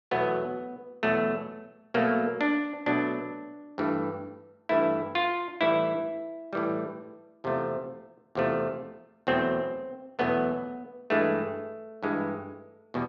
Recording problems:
none

